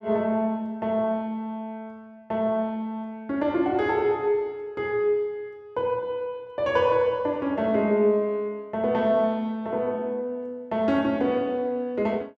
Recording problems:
none

